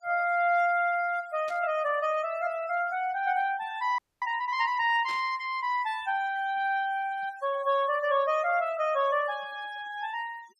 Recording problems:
noise reduction artefacts; signal-to-artefact ratio 21 dB
static burst; at 1.5 s and at 5 s; peak -12 dB vs average level
frozen audio; at 4 s

